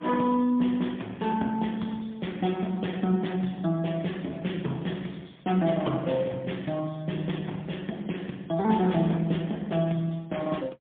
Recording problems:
phone line; 130 Hz to 3.5 kHz, AMR-NB, then MP3

